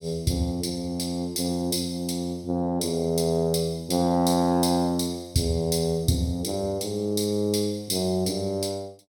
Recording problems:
none

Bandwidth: 17 kHz